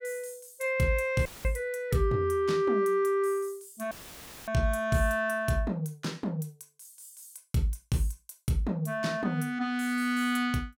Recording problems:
dropout; at 1.5 s and at 4 s for 0.5 s; filled with static

